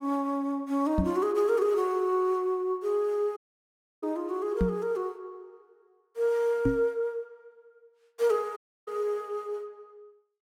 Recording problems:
knock on the microphone; at 1 s, at 4.5 s and at 6.5 s; peak +5 dB vs average level
dropout; at 3.5 s for 0.5 s and at 8.5 s

